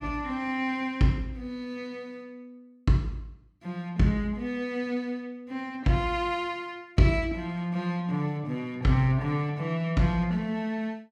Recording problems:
none

